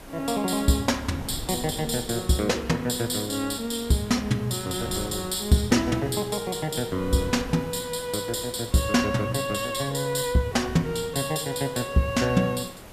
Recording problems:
background hiss; slope -5 dB per octave, SNR 20 dB
wind noise; below 260 Hz, SNR 19 dB

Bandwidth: 14.5 kHz